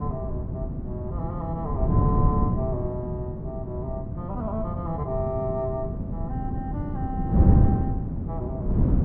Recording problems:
wind noise; below 190 Hz, SNR -6 dB

